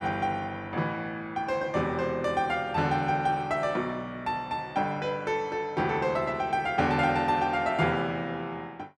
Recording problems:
none

